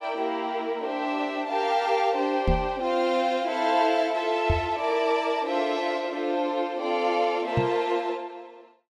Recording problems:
knock on the microphone; at 2.5 s, at 4.5 s and at 7.5 s; peak +4 dB vs average level

